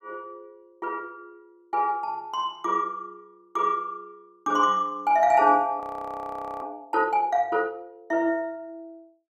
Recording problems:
frozen audio; at 6 s for 1 s

